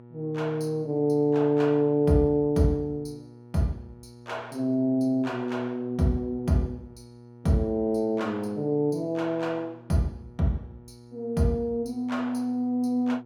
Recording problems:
electrical hum; 60 Hz, harmonics up to 1.3 kHz, SNR 22 dB

